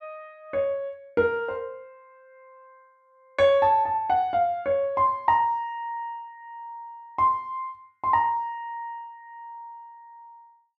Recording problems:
none

